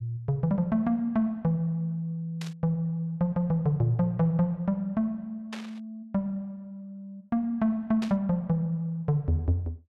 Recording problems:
burst of static; at 2.5 s, at 5.5 s and at 8 s; peak -7 dB vs average level

